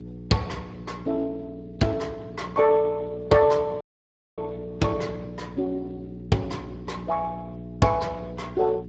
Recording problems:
lossy compression; Speex, log-spectral distance 3 dB, nothing above 7.3 kHz
electrical hum; 60 Hz, harmonics up to 420 Hz, SNR 13 dB
dropout; at 4 s for 0.5 s

